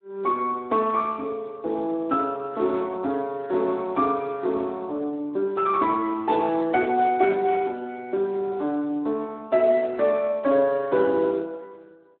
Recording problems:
phone line; 260 Hz to 2.6 kHz, Speex

